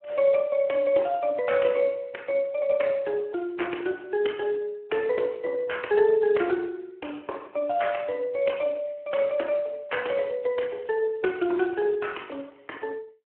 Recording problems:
telephone audio; 280 Hz to 3.1 kHz, Speex

